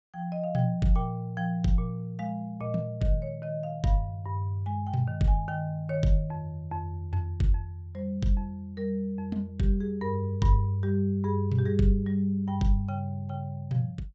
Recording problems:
treble missing; nothing above 8 kHz

